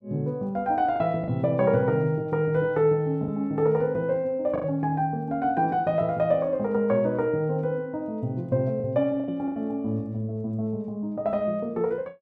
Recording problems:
lost packets; 3% of the sound replaced, filled with the last packet

